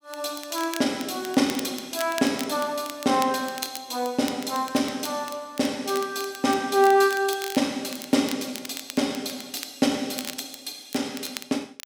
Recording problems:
crackle; vinyl, SNR 13 dB

